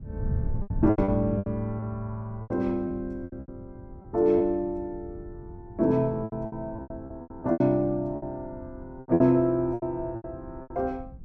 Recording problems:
wind noise; below 120 Hz, SNR 13 dB
lost packets; 14% of the sound replaced, filled with repeated pitch periods

